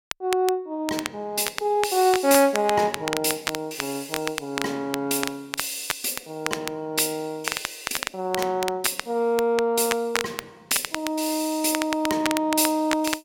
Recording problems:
crackling; vinyl, SNR 7 dB

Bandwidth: 16.5 kHz